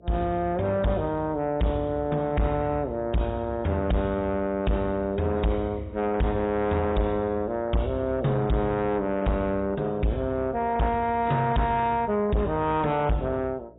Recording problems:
codec artefacts; AAC, log-spectral distance 2 dB, nothing above 3.8 kHz
distorted audio; soft clipping, signal-to-distortion ratio 6 dB
hum; 60 Hz, harmonics up to 660 Hz, SNR 26 dB

